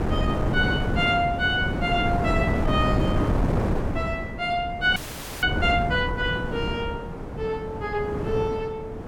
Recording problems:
wind noise; below 400 Hz, SNR 2 dB
audio freezing; at 5 s

